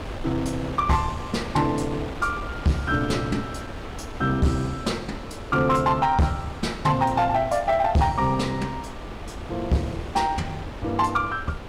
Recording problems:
distorted audio; hard clipping, signal-to-distortion ratio 12 dB
wind on the microphone; below 790 Hz, SNR 12 dB

